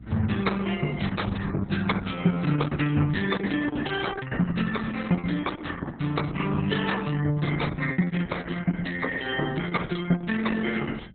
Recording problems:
lossy codec; MP3, then Opus, log-spectral distance 6 dB, nothing above 3.9 kHz
mains hum; 60 Hz, harmonics up to 300 Hz, SNR 20 dB
packet loss; 3% of the sound replaced, filled with repeated pitch periods

